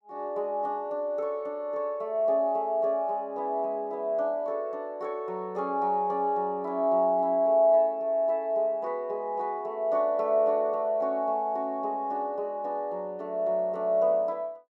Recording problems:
none

